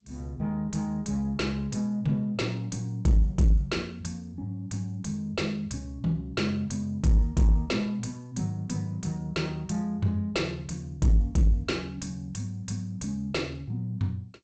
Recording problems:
codec artefacts; G.722, log-spectral distance 2 dB, nothing above 7.8 kHz
distortion; soft clipping, signal-to-distortion ratio 11 dB

